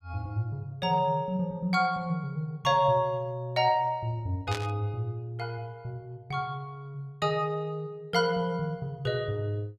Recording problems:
static burst; at 4.5 s; peak -3 dB vs average level

